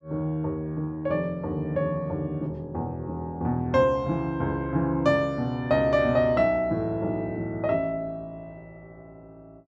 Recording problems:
none

